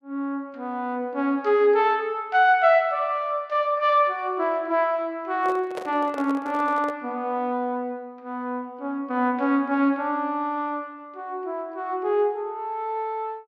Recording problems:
microphone handling noise; from 5.5 to 7 s; peak -5 dB vs average level

